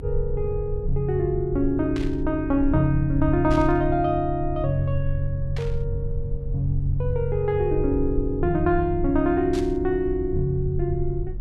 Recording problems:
rumble; below 58 Hz, strongest tone 22 Hz, SNR 9 dB
burst of static; 4 times, first at 2 s; peak -10 dB vs average level

